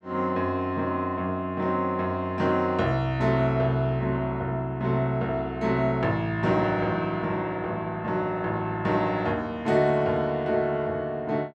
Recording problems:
none

